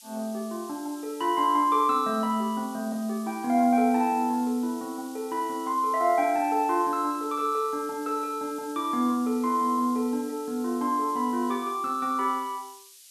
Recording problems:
hiss; SNR 20 dB

